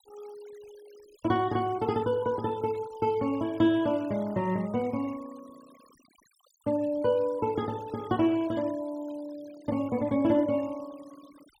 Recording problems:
denoising artefacts; signal-to-artefact ratio 24 dB

